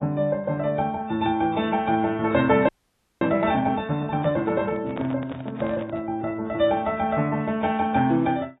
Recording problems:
lossy compression; AAC, then AAC, log-spectral distance 2 dB, nothing above 3.2 kHz
frozen audio; at 2.5 s for 0.5 s
handling noise; from 4 to 6 s; peak -6 dB vs average level

